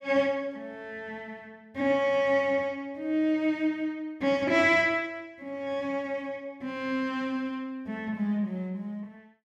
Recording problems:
none

